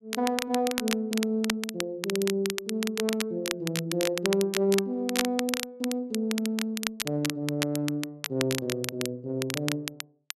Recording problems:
crackling; vinyl, SNR 4 dB

